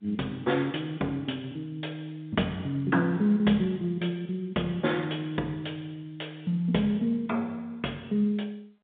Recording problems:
telephone audio; 170 Hz to 3.7 kHz, G.711

